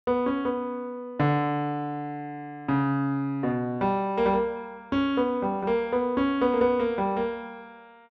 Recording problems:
none

